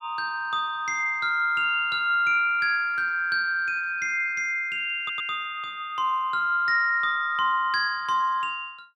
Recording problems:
audio stuttering; at 5 s

